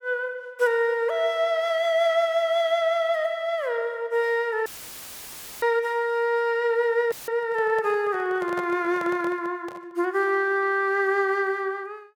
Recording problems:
dropout; at 4.5 s for 1 s and at 7 s; filled with static
microphone handling noise; from 7 to 10 s; peak -8 dB vs average level

